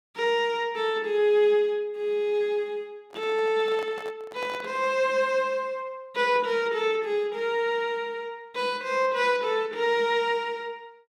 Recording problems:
handling noise; from 3 to 5 s; peak -10 dB vs average level

